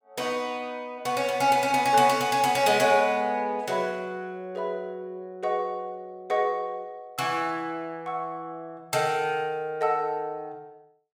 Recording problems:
none

